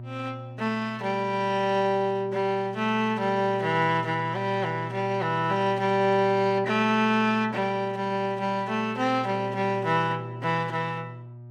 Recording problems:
electrical hum; 60 Hz, harmonics up to 600 Hz, SNR 14 dB

